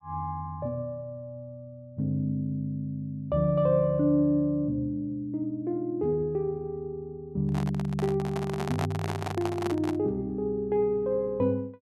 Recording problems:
handling noise; from 7.5 to 10 s; peak -1 dB vs average level

